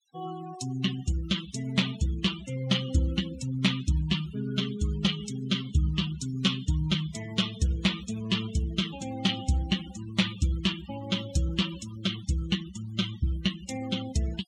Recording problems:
noise reduction artefacts; signal-to-artefact ratio 12 dB

